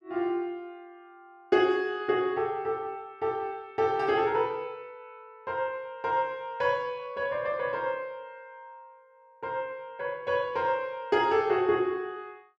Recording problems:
none

